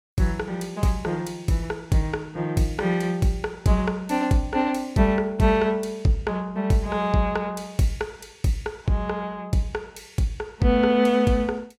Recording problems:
none

